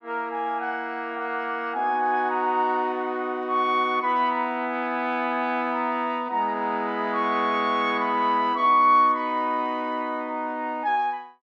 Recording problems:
none

